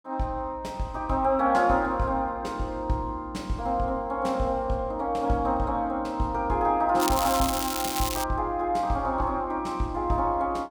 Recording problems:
crackling; from 7 to 8 s; loose cable, SNR 4 dB

